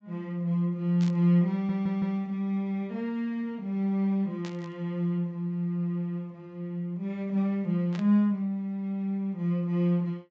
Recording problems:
low-pass filter; nothing above 8 kHz
static burst; at 1 s, at 4.5 s and at 8 s; peak -11 dB vs average level
stutter; at 1.5 s

